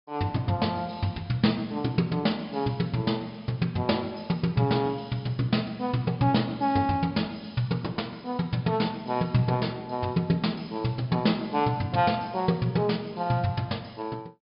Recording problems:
treble cut off; nothing above 5.2 kHz

